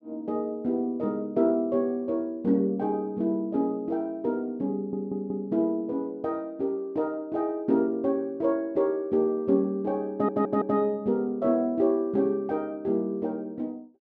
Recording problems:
stutter; at 5 s and at 10 s

